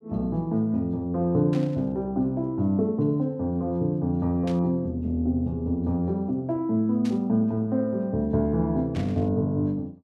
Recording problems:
static burst; 4 times, first at 1.5 s; peak -12 dB vs average level

